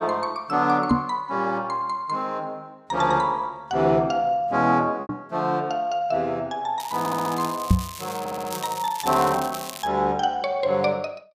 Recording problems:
packet loss; 0.8% of the sound replaced, filled with repeated pitch periods
microphone bump; at 1 s, at 5 s and at 7.5 s; peak +9 dB vs average level
crackling; from 7 to 10 s; loose cable, SNR 12 dB
audio stuttering; at 7 s and at 8 s

